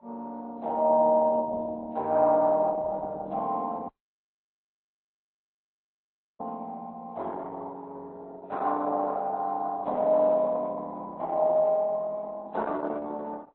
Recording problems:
codec artefacts; Opus, then AAC, log-spectral distance 2 dB
dropout; at 4 s for 2.5 s

